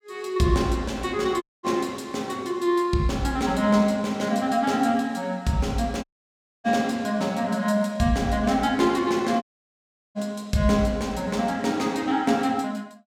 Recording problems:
audio cutting out; at 1.5 s, at 6 s for 0.5 s and at 9.5 s for 0.5 s

